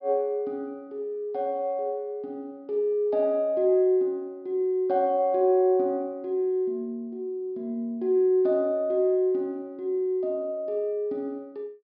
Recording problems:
treble missing; nothing above 5.5 kHz

